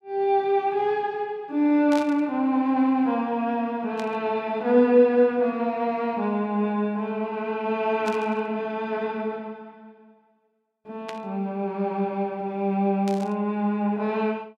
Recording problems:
static burst; 5 times, first at 2 s; peak -9 dB vs average level

